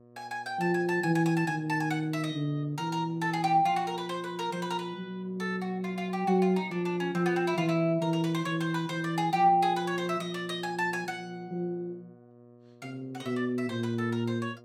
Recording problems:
hum; 60 Hz, harmonics up to 1.3 kHz, SNR 25 dB

